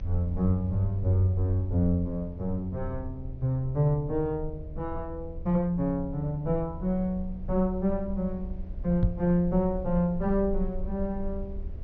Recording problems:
treble cut off; nothing above 6.3 kHz
hum; 60 Hz, harmonics up to 660 Hz, SNR 26 dB
low-frequency rumble; below 74 Hz, SNR 11 dB
microphone thump; at 9 s; peak +7 dB vs average level

